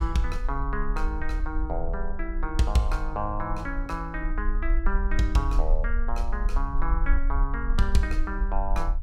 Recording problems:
low-frequency rumble; below 42 Hz, SNR 0 dB

